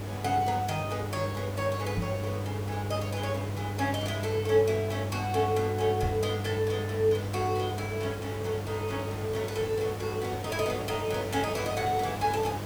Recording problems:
electrical hum; 50 Hz, harmonics up to 1 kHz, SNR 5 dB
background hiss; slope -6 dB per octave, SNR 10 dB
microphone bump; at 2 s and at 6 s; peak +1 dB vs average level

